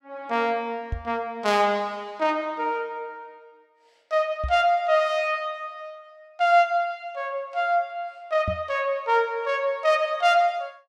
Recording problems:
microphone bump; at 1 s, at 4.5 s and at 8.5 s; peak -2 dB vs average level

